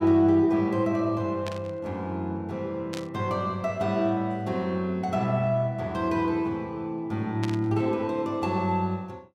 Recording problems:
static burst; at 1.5 s, at 3 s and at 7.5 s; peak -5 dB vs average level

